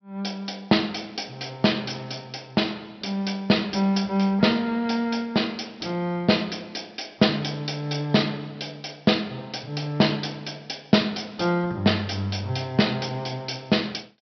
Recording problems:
treble cut off; nothing above 5.5 kHz

